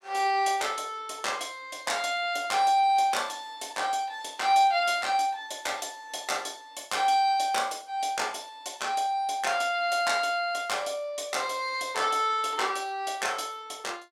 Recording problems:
none

